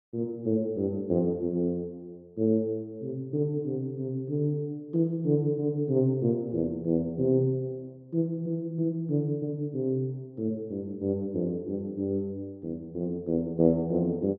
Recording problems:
none

